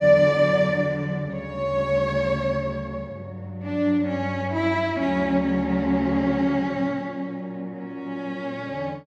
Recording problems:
none

